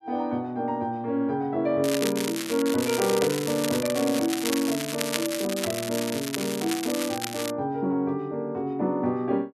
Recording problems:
crackling; from 2 to 7.5 s; loose cable, SNR 5 dB

